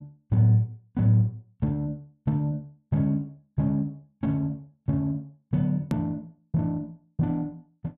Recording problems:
hard cut with a click; at 6 s

